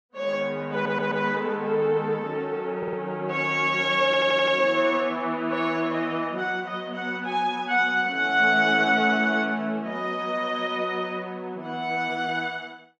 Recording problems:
audio stuttering; at 0.5 s, at 3 s and at 4 s

